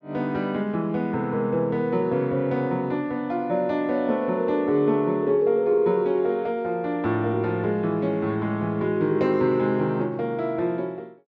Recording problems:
none

